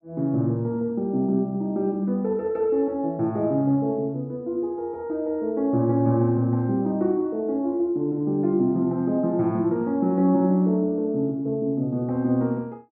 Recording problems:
none

